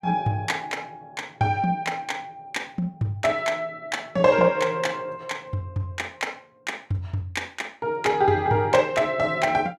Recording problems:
none

